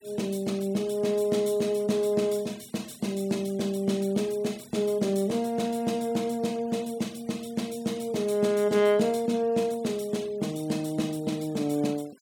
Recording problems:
noise reduction artefacts; signal-to-artefact ratio 22 dB

